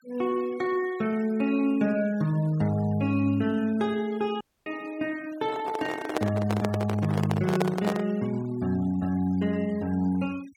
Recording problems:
noise reduction artefacts; signal-to-artefact ratio 22 dB
dropout; at 4.5 s
handling noise; from 5.5 to 8 s; peak +4 dB vs average level

